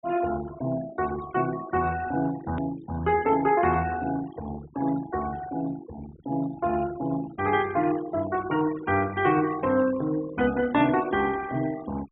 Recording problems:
treble missing; nothing above 4 kHz
denoising artefacts; signal-to-artefact ratio 16 dB
hard cut with a click; at 2.5 s

